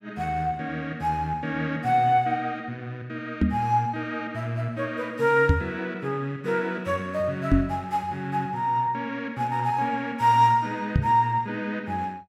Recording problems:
microphone bump; 4 times, first at 3.5 s; peak +8 dB vs average level

